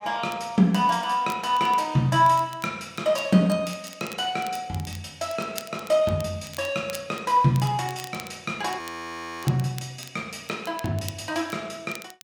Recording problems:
crackle; vinyl, SNR 19 dB
frozen audio; at 9 s for 0.5 s

